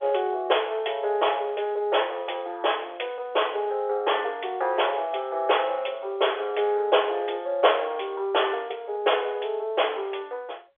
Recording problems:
telephone audio; 370 Hz to 3.5 kHz, G.711

